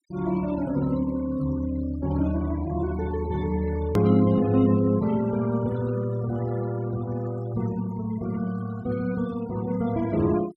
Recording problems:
denoising artefacts; signal-to-artefact ratio 19 dB
click at an edit; at 4 s

